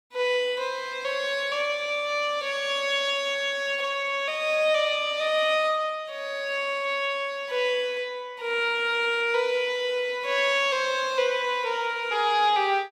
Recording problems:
none

